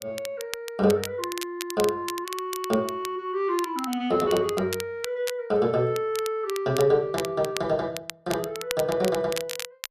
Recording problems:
crackling; vinyl, SNR 11 dB

